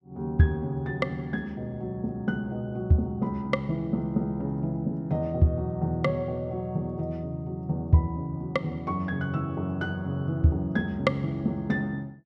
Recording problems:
none

